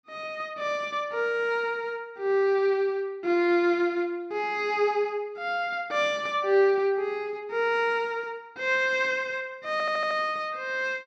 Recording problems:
stutter; at 9.5 s

